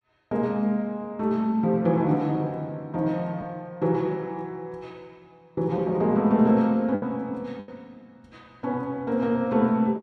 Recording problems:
packet loss; 1.9% of the sound replaced, filled with the last packet

